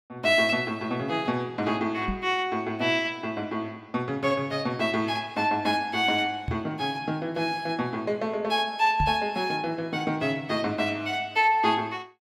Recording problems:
microphone bump; at 2 s, at 6.5 s and at 9 s; peak 0 dB vs average level

